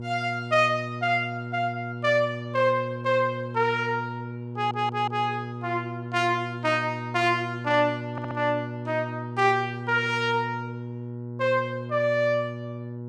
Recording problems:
hum; 60 Hz, harmonics up to 960 Hz, SNR 9 dB
audio stuttering; at 4.5 s and at 8 s

